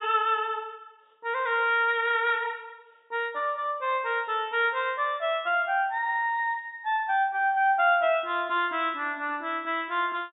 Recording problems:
treble cut off; nothing above 4 kHz

